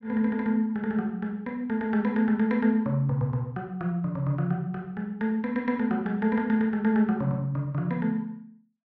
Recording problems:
none

